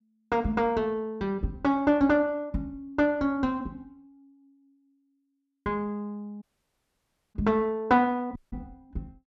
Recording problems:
audio cutting out; at 6.5 s for 1 s and at 8.5 s

